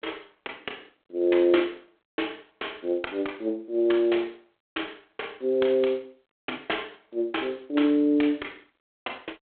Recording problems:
phone line; 260 Hz to 3.4 kHz, G.726

